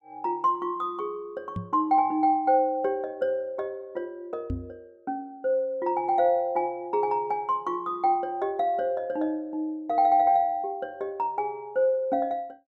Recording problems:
microphone bump; at 1.5 s and at 4.5 s; peak -2 dB vs average level

